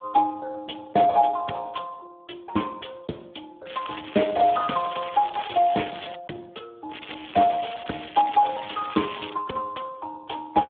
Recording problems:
phone line; 170 Hz to 3.5 kHz, Speex
crackle; from 3.5 to 6 s and from 7 to 9.5 s; loose cable, SNR 13 dB

